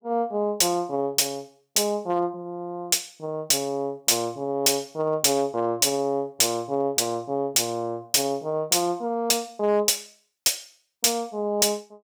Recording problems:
distorted audio; hard clipping, signal-to-distortion ratio 6 dB

